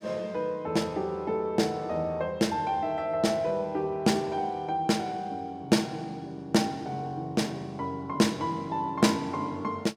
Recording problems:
none

